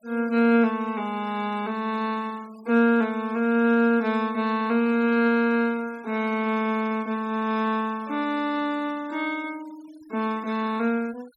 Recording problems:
denoising artefacts; signal-to-artefact ratio 25 dB

